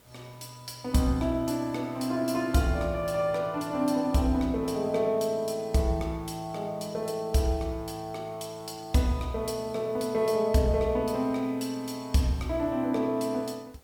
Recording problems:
hiss; slope -4 dB per octave, SNR 29 dB

